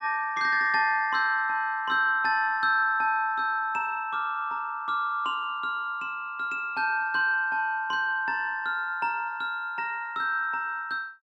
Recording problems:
none

